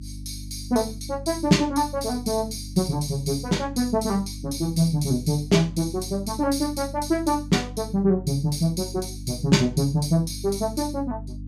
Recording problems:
electrical hum; 50 Hz, harmonics up to 300 Hz, SNR 13 dB

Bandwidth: 15.5 kHz